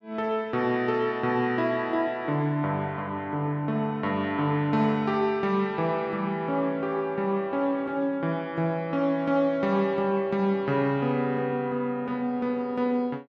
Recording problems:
none

